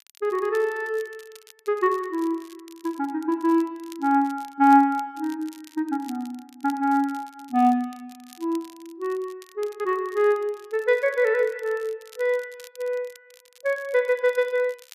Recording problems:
crackle; vinyl, SNR 26 dB

